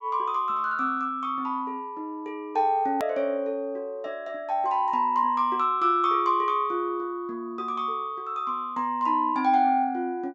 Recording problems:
low-pass filter; nothing above 8 kHz
hard cut with a click; at 3 s

